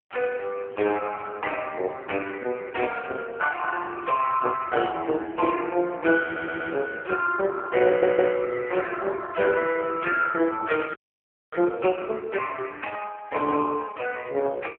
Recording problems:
telephone audio; 300 Hz to 3.1 kHz, AMR-NB
audio stuttering; at 6 s and at 8 s
frozen audio; at 11 s for 0.5 s

